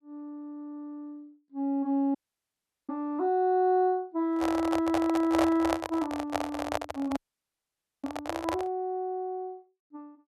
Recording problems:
dropout; at 2 s for 0.5 s and at 7 s for 1 s
handling noise; from 4.5 to 8.5 s; peak +4 dB vs average level

